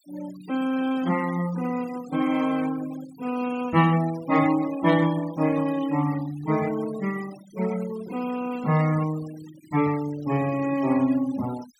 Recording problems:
denoising artefacts; signal-to-artefact ratio 17 dB

